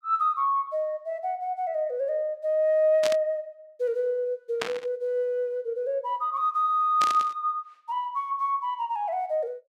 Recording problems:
burst of static; at 3 s, at 4.5 s and at 7 s; peak +1 dB vs average level

